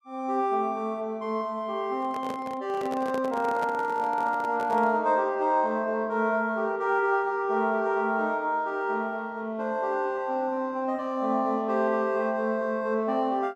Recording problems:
microphone handling noise; from 2 to 5 s; peak -5 dB vs average level

